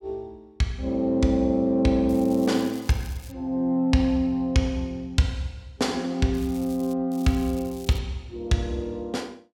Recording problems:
crackling; from 2 to 3.5 s, at 6.5 s and at 7 s; loose cable, SNR 22 dB

